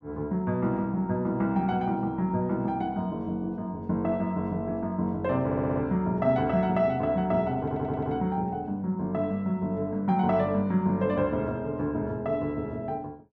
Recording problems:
audio stuttering; at 5.5 s and at 7.5 s

